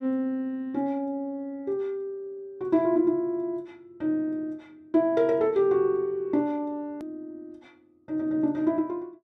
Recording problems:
hard cut with a click; at 7 s

